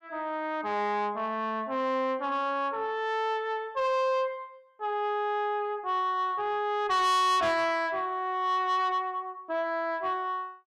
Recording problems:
distortion; soft clipping, signal-to-distortion ratio 7 dB

